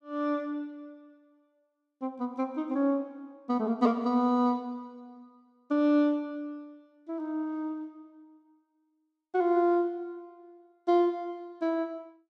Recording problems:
none

